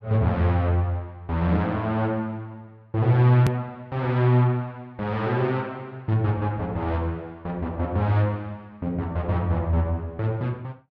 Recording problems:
hard cut with a click; at 3.5 s

